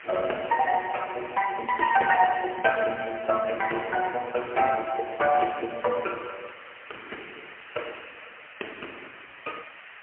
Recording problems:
telephone audio; 340 Hz to 2.8 kHz, AMR-NB, then MP3
background hiss; SNR 18 dB

